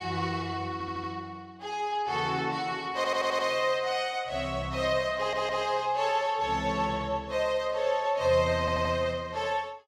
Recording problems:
stutter; 4 times, first at 0.5 s

